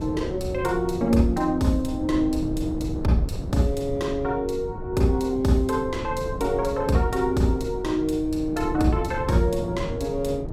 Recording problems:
wind noise; below 240 Hz, SNR 9 dB

